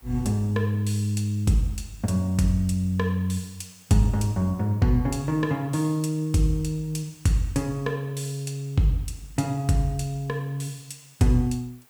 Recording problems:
background hiss; slope -2 dB per octave, SNR 29 dB

